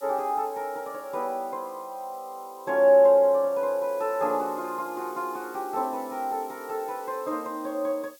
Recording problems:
background hiss; SNR 24 dB

